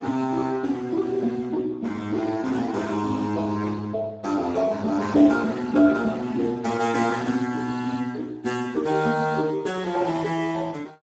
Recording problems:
lossy codec; Speex, log-spectral distance 4 dB, nothing above 7.6 kHz

